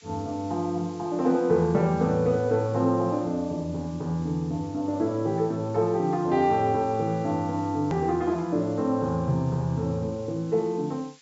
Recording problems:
treble cut off; nothing above 8 kHz
hiss; slope +5 dB per octave, SNR 27 dB
edit click; at 8 s

